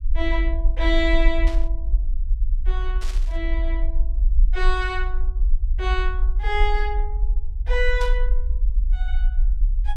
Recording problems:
rumble; below 46 Hz, SNR -3 dB
burst of static; at 1.5 s, at 3 s and at 8 s; peak -6 dB vs average level

